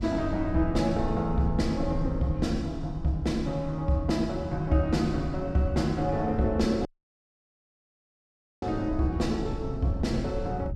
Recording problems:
low-frequency rumble; below 110 Hz, SNR 10 dB
wind on the microphone; below 270 Hz, SNR 19 dB
dropout; at 7 s for 2 s

